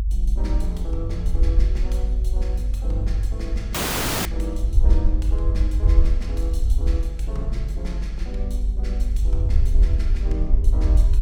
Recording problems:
rumble; below 54 Hz, SNR -10 dB
audio cutting out; at 3.5 s for 0.5 s

